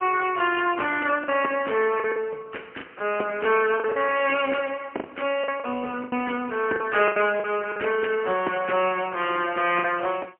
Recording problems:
telephone audio; 300 Hz to 3 kHz, AMR-NB, then MP3
lost packets; 7% of the sound replaced, filled with the last packet

